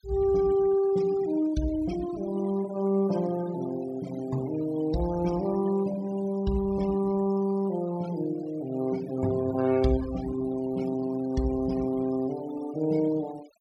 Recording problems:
noise reduction artefacts; signal-to-artefact ratio 18 dB

